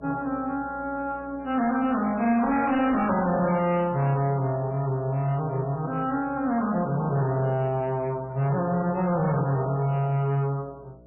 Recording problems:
lossy compression; MP3, log-spectral distance 2 dB, nothing above 2.6 kHz
distorted audio; hard clipping, signal-to-distortion ratio 11 dB
hum; 60 Hz, harmonics up to 660 Hz, SNR 25 dB
static burst; at 8.5 s; peak -17 dB vs average level

